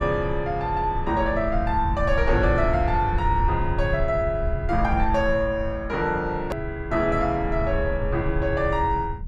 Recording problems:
rumble; below 88 Hz, SNR 6 dB
edit click; at 6.5 s

